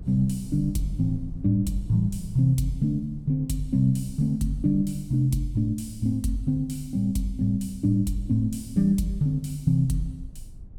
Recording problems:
low-frequency rumble; below 96 Hz, SNR 18 dB

